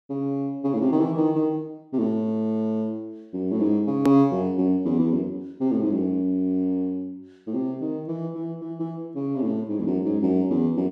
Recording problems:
click at an edit; at 4 s

